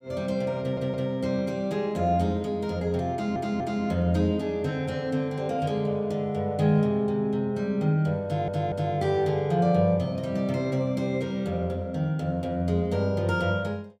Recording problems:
stutter; at 0.5 s, at 3 s and at 8 s

